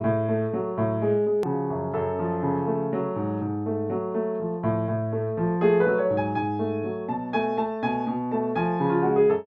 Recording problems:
hard cut with a click; at 1.5 s

